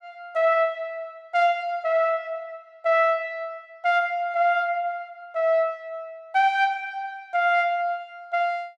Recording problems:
none

